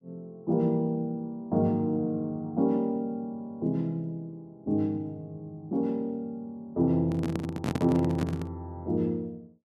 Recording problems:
microphone handling noise; from 7 to 8.5 s; peak +3 dB vs average level

